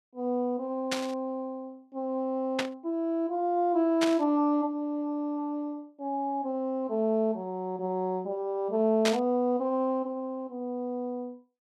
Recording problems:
static burst; 4 times, first at 1 s; peak +4 dB vs average level

